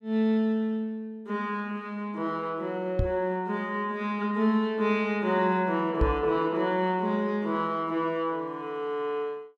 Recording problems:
knock on the microphone; at 3 s and at 6 s; peak +5 dB vs average level

